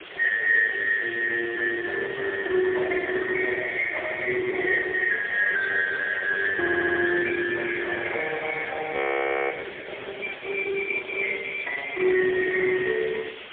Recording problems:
telephone audio; 300 Hz to 3.5 kHz, AMR-NB, then MP3
hiss; SNR 15 dB
wind noise; below 750 Hz, SNR 15 dB
audio stuttering; at 6.5 s
frozen audio; at 9 s for 0.5 s

